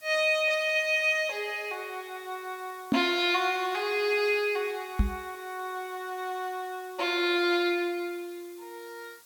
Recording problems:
background hiss; slope +1 dB per octave, SNR 24 dB
microphone thump; at 3 s and at 5 s; peak +6 dB vs average level

